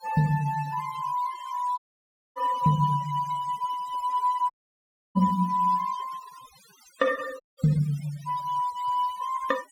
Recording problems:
denoising artefacts; signal-to-artefact ratio 19 dB
dropout; at 2 s for 0.5 s, at 4.5 s for 0.5 s and at 7.5 s

